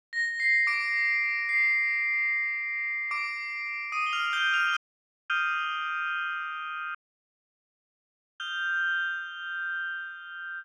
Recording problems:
audio cutting out; at 5 s for 0.5 s and at 7 s for 1.5 s

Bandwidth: 16 kHz